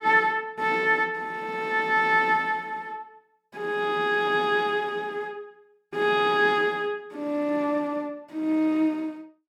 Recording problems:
none

